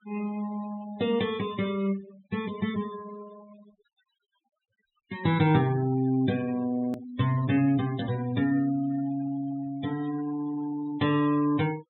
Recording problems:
low-pass filter; nothing above 3.9 kHz
denoising artefacts; signal-to-artefact ratio 17 dB
click at an edit; at 7 s

